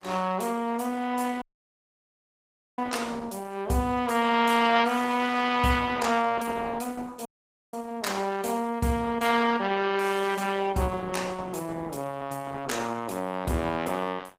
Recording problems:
lossy codec; Opus, log-spectral distance 4 dB, nothing above 15.5 kHz
dropout; at 1.5 s for 1.5 s and at 7.5 s

